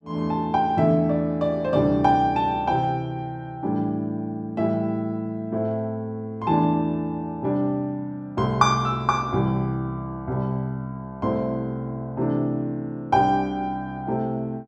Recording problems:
none

